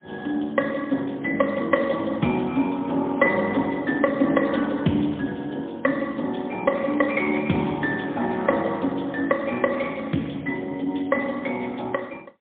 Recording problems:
phone line; 150 Hz to 3.5 kHz, AMR-NB, then MP3

